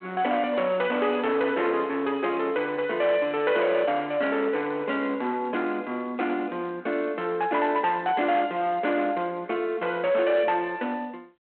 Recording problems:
phone line; 260 Hz to 3.5 kHz, G.726
distorted audio; hard clipping, signal-to-distortion ratio 12 dB

